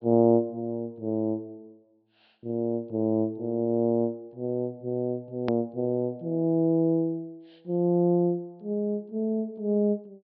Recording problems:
treble missing; nothing above 5.5 kHz
edit click; at 5.5 s

